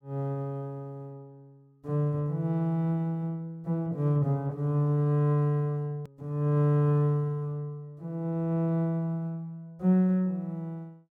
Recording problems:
hard cut with a click; at 6 s

